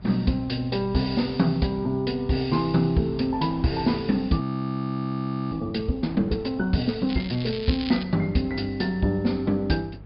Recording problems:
treble cut off; nothing above 5.1 kHz
hum; 50 Hz, harmonics up to 400 Hz, SNR 20 dB
wind on the microphone; below 540 Hz, SNR 24 dB
audio freezing; at 4.5 s for 1 s
crackling; at 7 s; loose cable, SNR 12 dB

